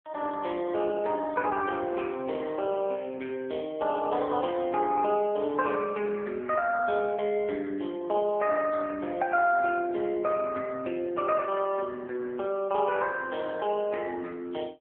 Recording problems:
phone line; 300 Hz to 3.3 kHz, AMR-NB

